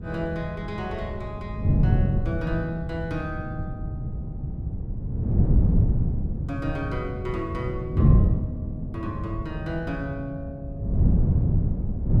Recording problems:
wind on the microphone; below 160 Hz, SNR -7 dB

